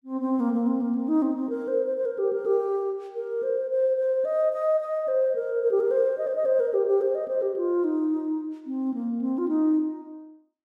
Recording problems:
none

